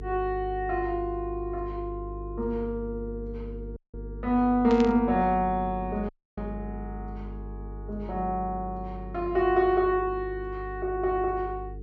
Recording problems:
treble missing; nothing above 7.5 kHz
hum; 50 Hz, harmonics up to 450 Hz, SNR 11 dB
dropout; at 4 s and at 6 s
burst of static; at 4.5 s; peak -5 dB vs average level

